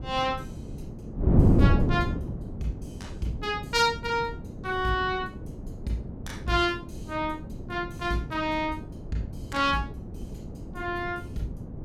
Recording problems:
wind on the microphone; below 250 Hz, SNR 2 dB

